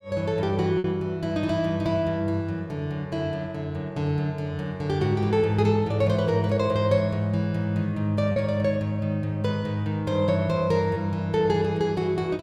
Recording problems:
packet loss; 1% of the sound replaced, filled with repeated pitch periods

